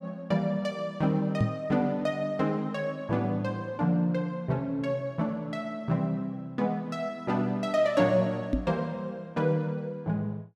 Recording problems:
microphone bump; at 1.5 s and at 8.5 s; peak +6 dB vs average level

